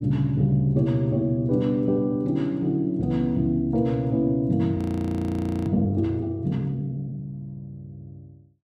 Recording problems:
audio freezing; at 5 s for 1 s

